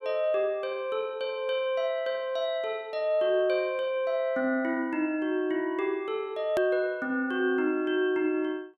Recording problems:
hard cut with a click; at 6.5 s

